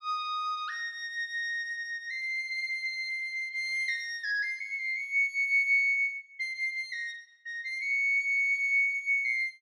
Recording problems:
none

